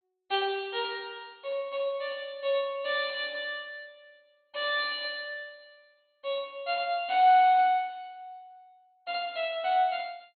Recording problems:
treble cut off; nothing above 4.2 kHz

